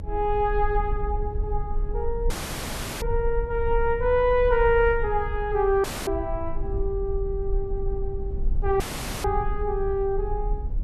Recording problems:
rumble; below 52 Hz, SNR 6 dB
audio cutting out; at 2.5 s for 0.5 s, at 6 s and at 9 s

